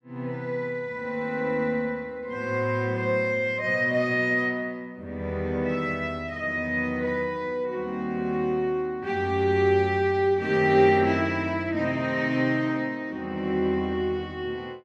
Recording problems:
none

